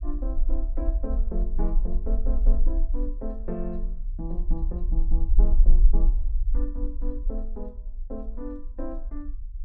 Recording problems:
low-frequency rumble; below 38 Hz, strongest tone 20 Hz, SNR -10 dB

